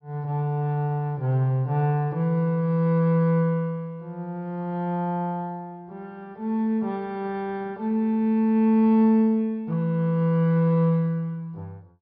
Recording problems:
low-pass filter; nothing above 5.5 kHz

